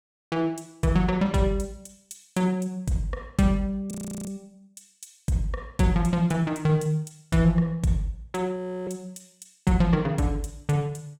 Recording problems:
audio freezing; at 4 s and at 8.5 s

